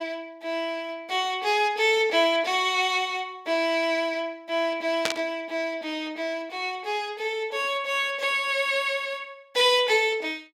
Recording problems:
burst of static; at 5 s; peak +4 dB vs average level

